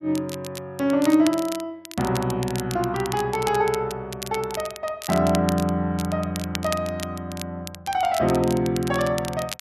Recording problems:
crackling; vinyl, SNR 12 dB

